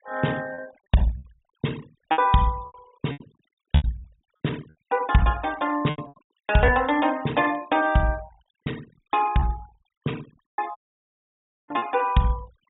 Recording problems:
treble missing; nothing above 4 kHz
noise reduction artefacts; signal-to-artefact ratio 22 dB
packet loss; 11% of the sound replaced, filled with repeated pitch periods
audio cutting out; at 11 s for 1 s

